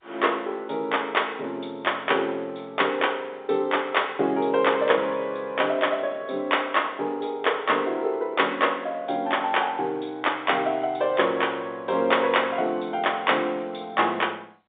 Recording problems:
telephone audio; 190 Hz to 3.7 kHz, G.711

